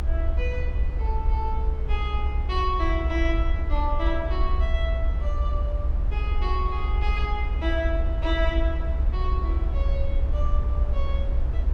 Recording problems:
rumble; below 66 Hz, SNR -5 dB

